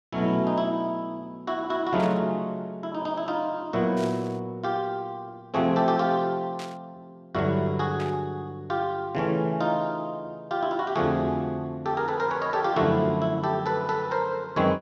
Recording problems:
static burst; 4 times, first at 2 s; peak -9 dB vs average level

